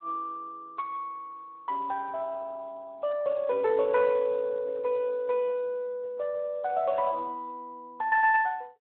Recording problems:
telephone audio; 340 Hz to 2.6 kHz, Speex

